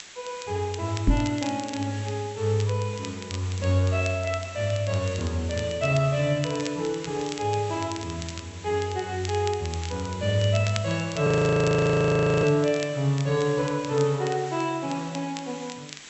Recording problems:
treble cut off; nothing above 7.9 kHz
background hiss; slope +1 dB per octave, SNR 16 dB
crackling; vinyl, SNR 16 dB
microphone bump; at 1 s; peak +7 dB vs average level
frozen audio; at 11 s for 1 s

